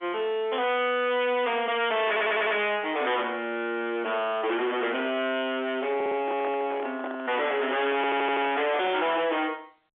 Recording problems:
telephone audio; 260 Hz to 3.6 kHz, G.711
distortion; hard clipping, uneven, signal-to-distortion ratio 5 dB
audio stuttering; at 2 s, at 6 s and at 8 s
handling noise; from 6 to 9 s; peak -5 dB vs average level

